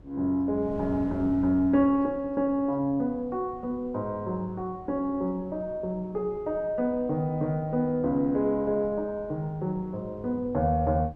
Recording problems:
wind noise; below 300 Hz, SNR 19 dB

